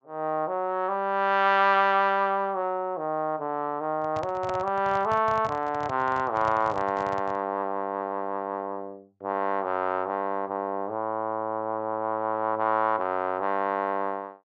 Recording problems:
low-pass filter; nothing above 8 kHz
handling noise; from 4 to 7.5 s; peak -5 dB vs average level

